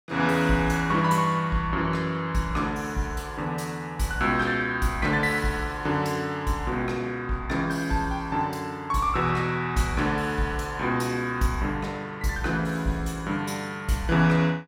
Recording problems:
none

